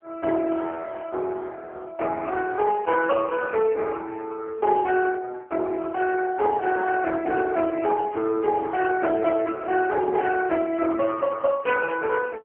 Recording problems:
phone line; 280 Hz to 3.4 kHz, AMR-NB

